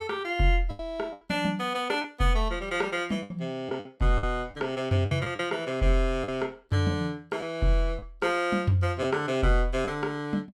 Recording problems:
packet loss; 6% of the sound replaced, filled with the last packet

